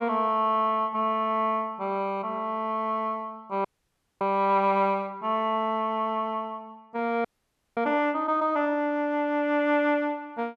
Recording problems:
frozen audio; at 3.5 s for 0.5 s and at 7.5 s for 0.5 s

